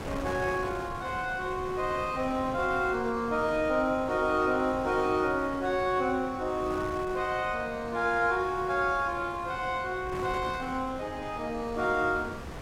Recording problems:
wind noise; below 1 kHz, SNR 13 dB

